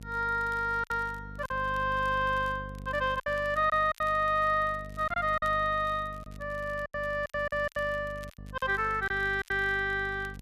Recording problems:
electrical hum; 50 Hz, harmonics up to 500 Hz, SNR 15 dB
crackle; vinyl, SNR 29 dB
packet loss; 8% of the sound replaced, filled with silence

